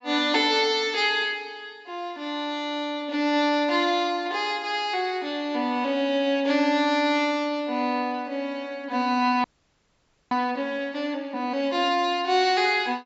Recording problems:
treble missing; nothing above 8 kHz
frozen audio; at 9.5 s for 1 s

